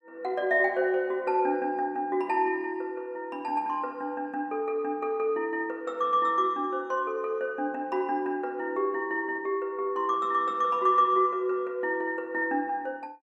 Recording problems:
none

